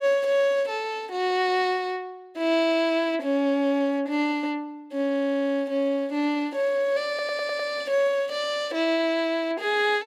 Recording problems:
audio stuttering; at 5 s and at 7 s

